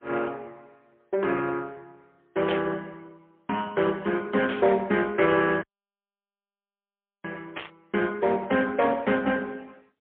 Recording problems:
telephone audio; 170 Hz to 3.2 kHz, AMR-NB, then MP3
burst of static; at 2.5 s, at 4.5 s and at 7.5 s; peak -3 dB vs average level
dropout; at 5.5 s for 1.5 s

